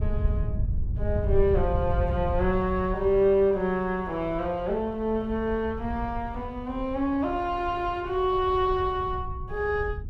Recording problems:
wind noise; below 92 Hz, SNR 7 dB

